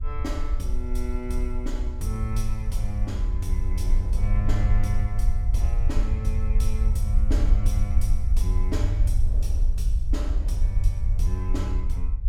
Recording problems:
low-frequency rumble; below 56 Hz, SNR -6 dB
wind noise; below 430 Hz, SNR 16 dB

